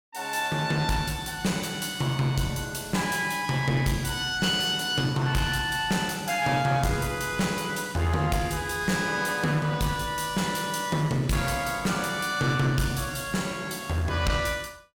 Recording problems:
distortion; hard clipping, uneven, signal-to-distortion ratio 11 dB

